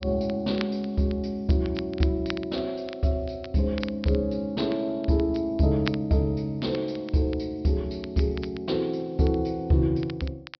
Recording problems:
low-pass filter; nothing above 5.5 kHz
crackling; vinyl, SNR 17 dB

